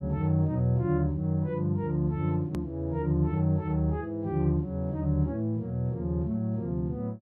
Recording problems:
hard cut with a click; at 2.5 s

